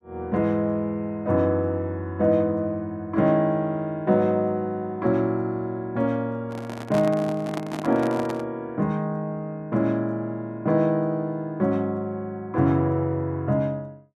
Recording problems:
handling noise; from 6.5 to 8.5 s; peak -3 dB vs average level

